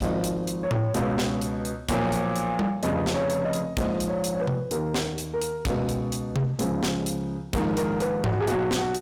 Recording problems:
distortion; soft clipping, signal-to-distortion ratio 6 dB

